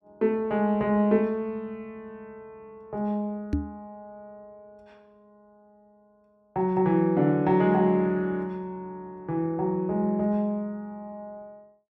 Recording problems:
knock on the microphone; at 3.5 s; peak +3 dB vs average level

